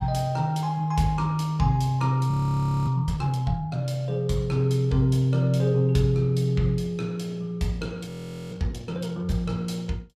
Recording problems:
frozen audio; at 2.5 s for 0.5 s and at 8 s

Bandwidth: 14.5 kHz